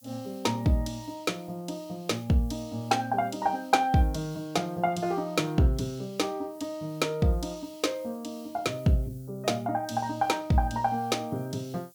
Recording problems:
hiss; slope +8 dB per octave, SNR 27 dB

